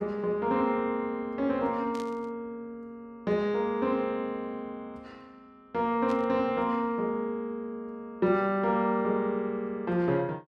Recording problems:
burst of static; at 2 s and at 6 s; peak -12 dB vs average level

